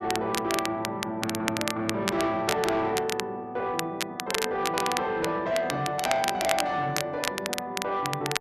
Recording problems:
distortion; soft clipping, signal-to-distortion ratio 11 dB
crackling; vinyl, SNR 4 dB

